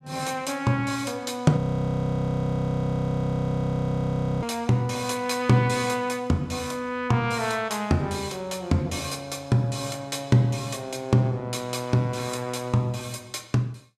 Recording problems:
audio freezing; at 1.5 s for 3 s

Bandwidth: 14.5 kHz